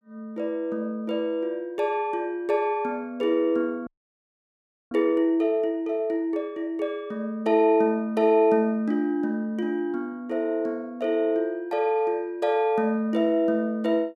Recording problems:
audio freezing; at 4 s for 1 s

